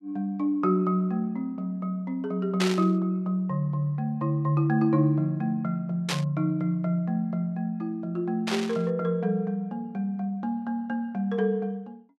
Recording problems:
static burst; at 2.5 s, at 6 s and at 8.5 s; peak +2 dB vs average level

